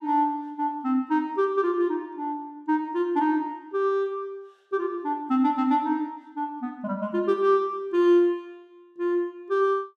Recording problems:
none

